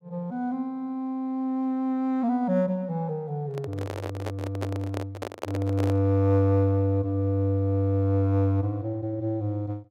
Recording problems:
handling noise; from 3.5 to 6 s; peak -2 dB vs average level

